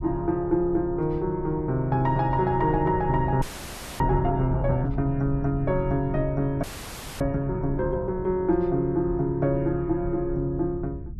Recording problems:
rumble; below 100 Hz, SNR 11 dB
audio freezing; at 3.5 s for 0.5 s and at 6.5 s for 0.5 s

